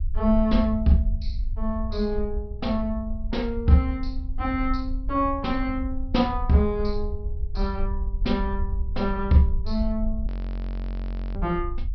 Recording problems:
low-pass filter; nothing above 5.5 kHz
low-frequency rumble; below 62 Hz, SNR 6 dB
audio freezing; at 10 s for 1 s

